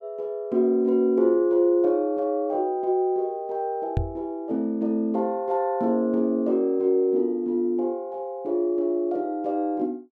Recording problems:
microphone thump; at 4 s; peak +3 dB vs average level

